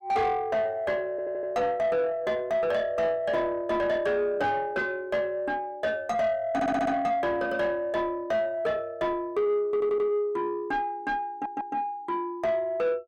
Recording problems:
distortion; soft clipping, signal-to-distortion ratio 11 dB
stutter; 4 times, first at 1 s

